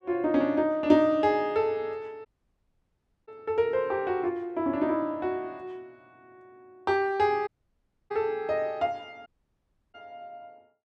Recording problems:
dropout; at 2.5 s for 1 s, at 7.5 s for 0.5 s and at 9.5 s for 0.5 s

